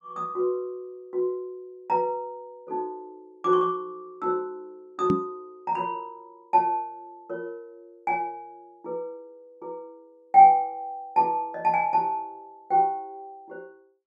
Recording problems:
microphone bump; at 5 s; peak +4 dB vs average level

